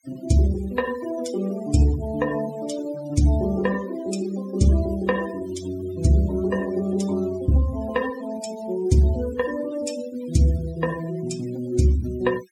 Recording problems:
denoising artefacts; signal-to-artefact ratio 17 dB

